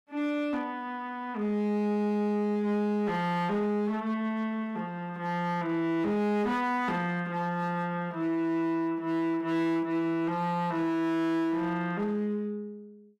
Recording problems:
distortion; hard clipping, signal-to-distortion ratio 10 dB

